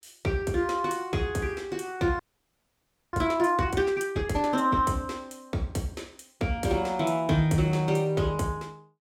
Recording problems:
frozen audio; at 2 s for 1 s

